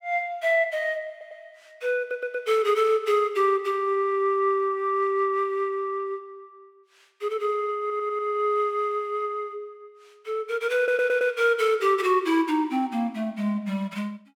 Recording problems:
stutter; 4 times, first at 1 s

